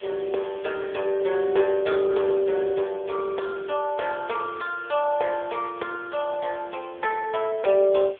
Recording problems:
phone line; 340 Hz to 3.4 kHz, AMR-NB
hiss; SNR 24 dB

